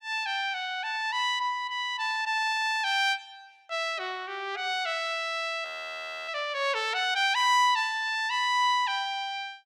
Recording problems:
frozen audio; at 5.5 s for 0.5 s

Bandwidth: 17.5 kHz